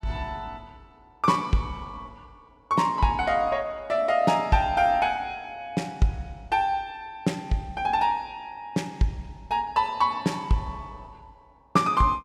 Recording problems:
none

